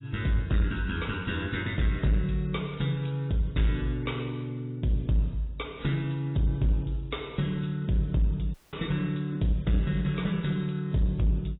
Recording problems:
codec artefacts; AAC, log-spectral distance 4 dB, nothing above 3.8 kHz
distortion; soft clipping, signal-to-distortion ratio 11 dB
audio cutting out; at 8.5 s

